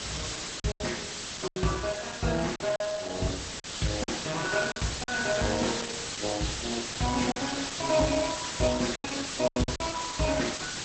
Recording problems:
codec artefacts; Opus, log-spectral distance 16 dB, nothing above 8 kHz
background hiss; slope 0 dB per octave, SNR 4 dB
lost packets; 7% of the sound replaced, filled with silence

